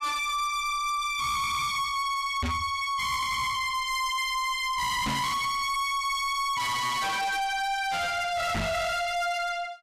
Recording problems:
distortion; soft clipping, signal-to-distortion ratio 6 dB
microphone thump; at 2.5 s, at 5 s and at 8.5 s; peak +3 dB vs average level

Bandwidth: 15 kHz